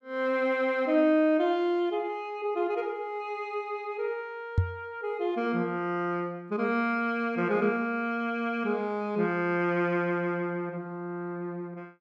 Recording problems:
knock on the microphone; at 4.5 s; peak +8 dB vs average level

